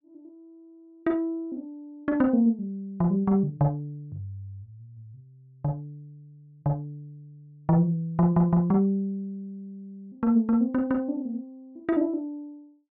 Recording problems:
none

